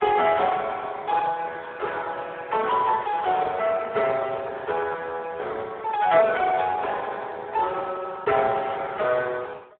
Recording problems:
telephone audio; 370 Hz to 2 kHz, Speex

